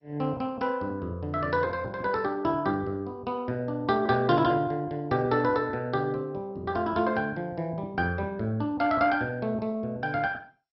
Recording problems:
lossy compression; MP2, log-spectral distance 2 dB, nothing above 5.5 kHz

